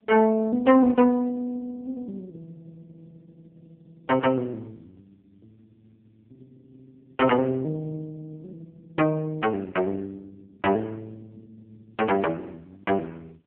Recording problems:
telephone audio; 280 Hz to 2.6 kHz, AMR-NB

